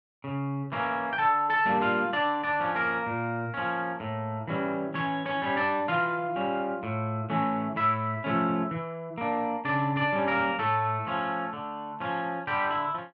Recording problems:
none

